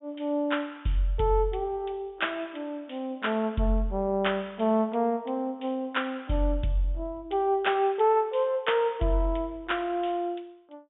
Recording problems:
treble cut off; nothing above 3.6 kHz

